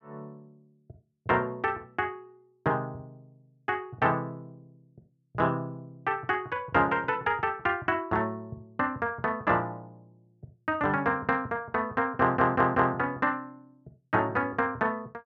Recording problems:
audio stuttering; at 12 s

